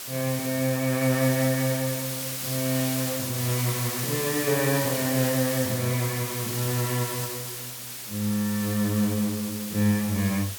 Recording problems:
background hiss; slope +1 dB per octave, SNR 4 dB

